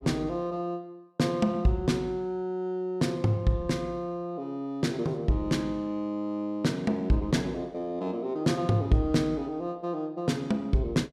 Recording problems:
none

